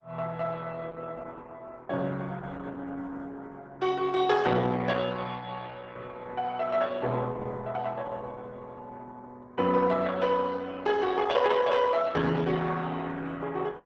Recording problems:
lossy codec; Opus, log-spectral distance 4 dB, nothing above 7.8 kHz

